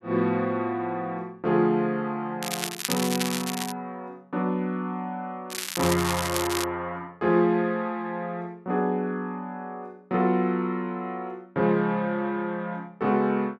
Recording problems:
crackling; from 2.5 to 3.5 s and from 5.5 to 6.5 s; loose cable, SNR 4 dB

